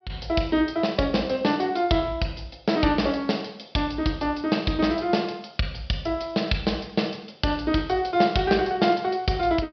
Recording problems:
low-pass filter; nothing above 5.5 kHz

